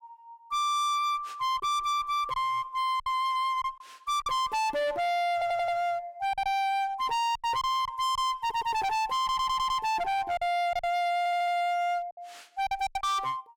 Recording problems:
distorted audio; hard clipping, uneven, signal-to-distortion ratio 5 dB
lost packets; 6% of the sound replaced, filled with silence
stutter; 4 times, first at 5.5 s

